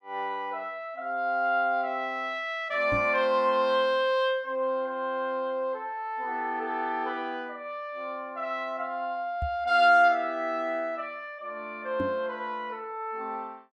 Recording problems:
knock on the microphone; at 3 s, at 9.5 s and at 12 s; peak -1 dB vs average level

